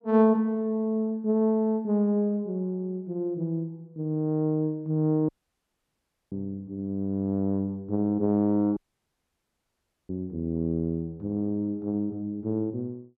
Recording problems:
dropout; at 5.5 s for 1 s and at 9 s for 1.5 s

